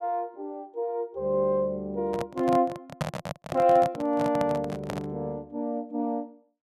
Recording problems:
microphone handling noise; from 2 to 5 s; peak +2 dB vs average level

